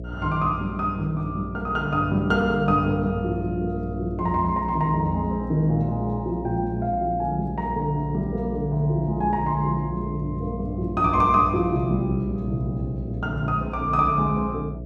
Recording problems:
hum; 60 Hz, harmonics up to 660 Hz, SNR 10 dB

